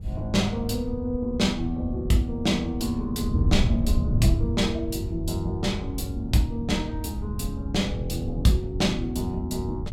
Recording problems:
wind noise; below 120 Hz, SNR 4 dB

